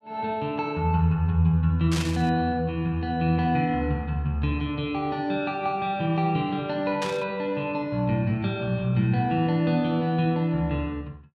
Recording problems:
static burst; at 2 s and at 7 s; peak -3 dB vs average level

